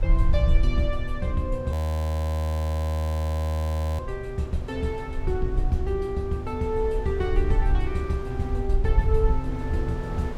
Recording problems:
low-frequency rumble; below 66 Hz, SNR 1 dB
wind on the microphone; below 800 Hz, SNR 15 dB
frozen audio; at 1.5 s for 2.5 s

